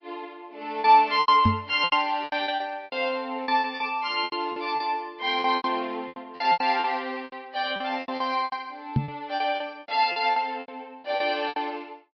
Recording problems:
low-pass filter; nothing above 5.5 kHz
codec artefacts; MP3, log-spectral distance 2 dB
packet loss; 16% of the sound replaced, filled with repeated pitch periods
microphone thump; at 1.5 s and at 9 s; peak +6 dB vs average level

